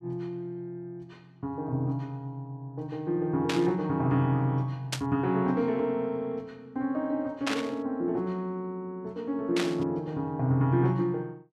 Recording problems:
static burst; 4 times, first at 3.5 s; peak +3 dB vs average level

